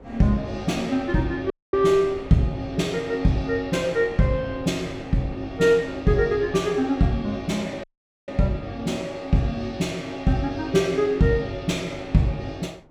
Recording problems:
wind noise; below 470 Hz, SNR 21 dB
dropout; at 1.5 s and at 8 s

